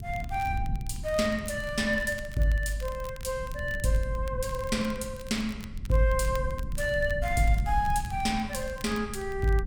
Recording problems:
rumble; below 100 Hz, SNR 9 dB
crackle; vinyl, SNR 21 dB

